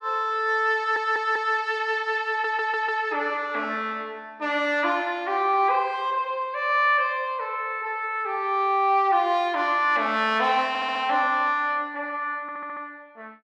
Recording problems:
audio stuttering; 4 times, first at 1 s

